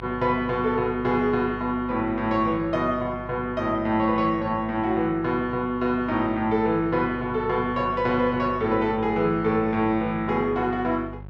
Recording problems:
electrical hum; 50 Hz, harmonics up to 1.1 kHz, SNR 17 dB

